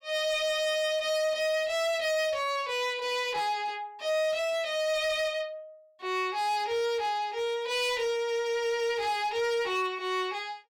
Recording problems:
distorted audio; hard clipping, uneven, signal-to-distortion ratio 11 dB

